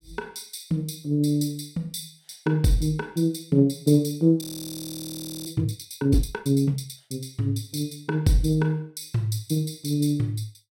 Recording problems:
audio freezing; at 4.5 s for 1 s

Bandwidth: 16 kHz